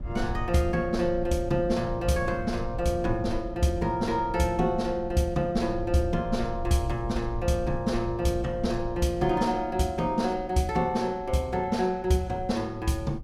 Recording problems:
rumble; below 88 Hz, SNR 12 dB

